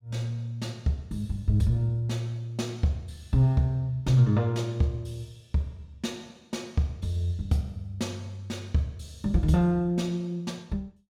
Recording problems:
none

